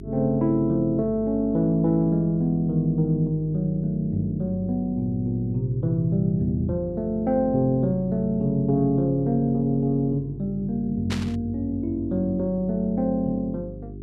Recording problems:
electrical hum; 50 Hz, harmonics up to 400 Hz, SNR 14 dB
static burst; at 11 s; peak -4 dB vs average level

